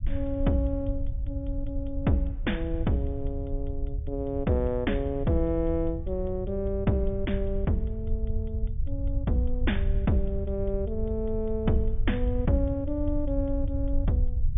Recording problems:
treble cut off; nothing above 3.6 kHz
low-frequency rumble; below 74 Hz, SNR 3 dB

